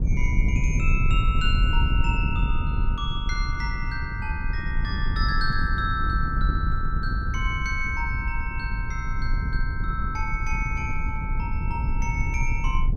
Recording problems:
wind on the microphone; below 82 Hz, SNR -3 dB

